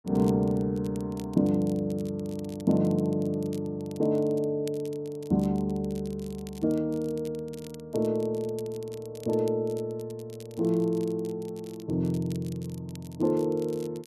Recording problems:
crackling; vinyl, SNR 23 dB

